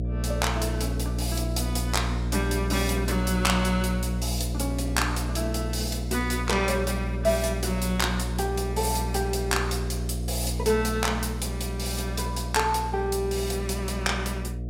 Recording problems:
hum; 60 Hz, harmonics up to 600 Hz, SNR 2 dB

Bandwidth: 16 kHz